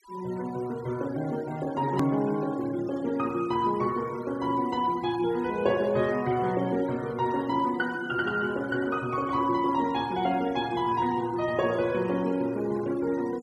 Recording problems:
noise reduction artefacts; signal-to-artefact ratio 20 dB
hard cut with a click; at 2 s

